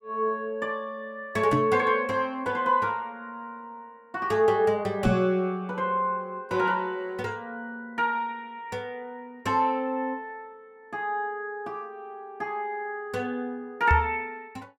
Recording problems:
microphone bump; at 1.5 s, at 5 s and at 14 s; peak +6 dB vs average level

